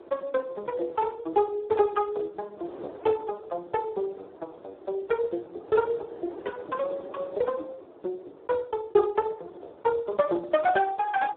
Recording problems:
phone line; 280 Hz to 2.3 kHz, Speex
wind noise; below 660 Hz, SNR 18 dB

